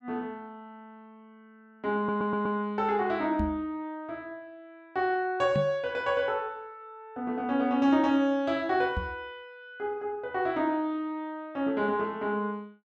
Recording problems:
stutter; at 2 s
microphone bump; at 3.5 s, at 5.5 s and at 9 s; peak +2 dB vs average level

